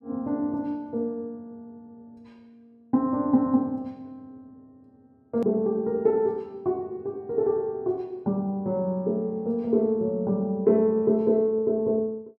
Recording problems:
click at an edit; at 5.5 s

